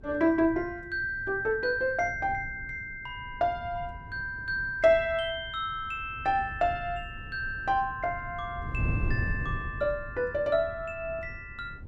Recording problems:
wind on the microphone; below 130 Hz, SNR 11 dB

